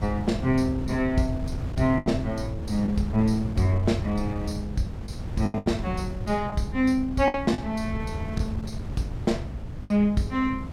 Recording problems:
wind on the microphone; below 150 Hz, SNR 7 dB
packet loss; 5% of the sound replaced, filled with the last packet

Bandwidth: 16 kHz